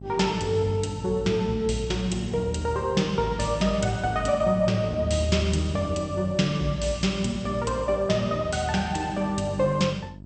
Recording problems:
lossy codec; MP2, log-spectral distance 3 dB, nothing above 8.5 kHz
hum; 50 Hz, harmonics up to 650 Hz, SNR 17 dB

